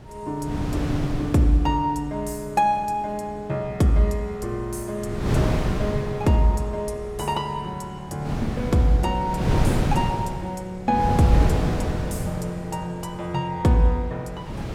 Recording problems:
wind on the microphone; below 300 Hz, SNR 2 dB

